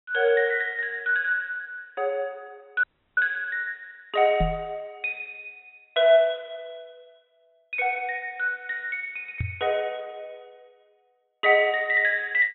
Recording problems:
treble missing; nothing above 3.9 kHz
dropout; at 3 s
microphone bump; at 4.5 s and at 9.5 s; peak +1 dB vs average level

